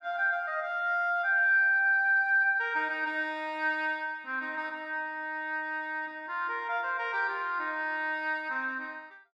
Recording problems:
none

